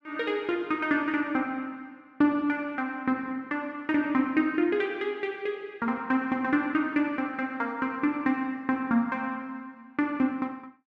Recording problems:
none

